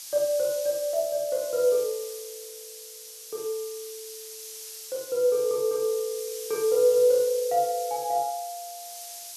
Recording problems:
background hiss; SNR 12 dB

